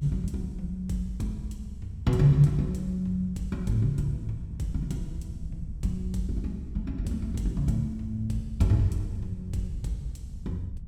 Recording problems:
electrical hum; 50 Hz, harmonics up to 900 Hz, SNR 28 dB
low-frequency rumble; below 96 Hz, SNR 11 dB

